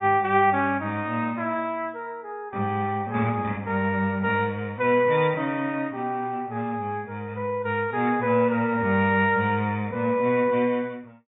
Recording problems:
treble missing; nothing above 4 kHz

